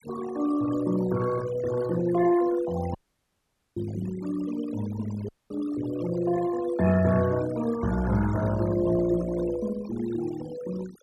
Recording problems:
denoising artefacts; signal-to-artefact ratio 14 dB
dropout; at 3 s for 1 s and at 5.5 s

